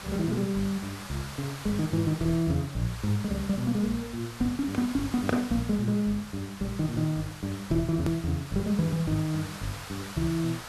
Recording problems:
hiss; SNR 13 dB
edit click; at 8 s

